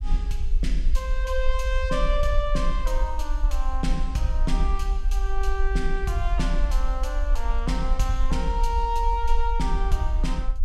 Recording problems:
low-frequency rumble; below 46 Hz, SNR -2 dB

